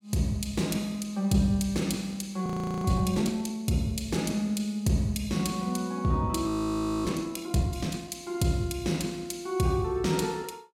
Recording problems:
audio freezing; at 2.5 s and at 6.5 s for 0.5 s

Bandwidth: 16 kHz